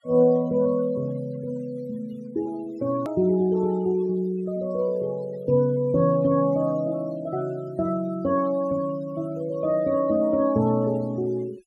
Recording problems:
noise reduction artefacts; signal-to-artefact ratio 24 dB
edit click; at 3 s

